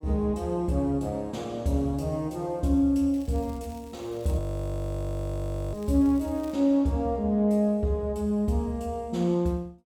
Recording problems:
crackling; from 3 to 6.5 s; loose cable, SNR 29 dB
audio freezing; at 4.5 s for 1.5 s

